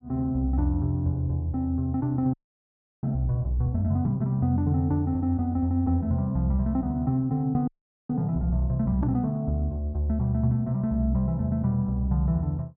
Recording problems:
frozen audio; at 2.5 s for 0.5 s and at 7.5 s

